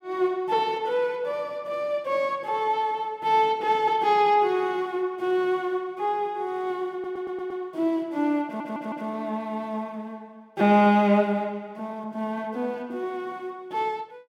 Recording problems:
audio stuttering; at 7 s and at 8.5 s

